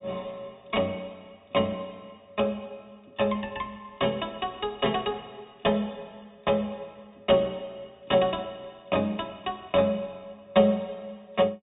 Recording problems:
treble missing; nothing above 4 kHz

